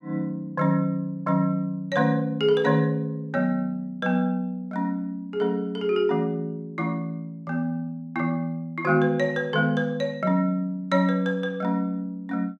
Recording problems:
none

